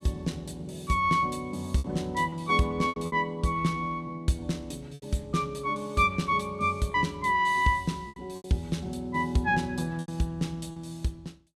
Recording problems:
packet loss; 5% of the sound replaced, filled with repeated pitch periods

